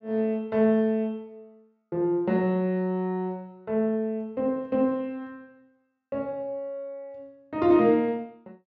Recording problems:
treble cut off; nothing above 7.4 kHz

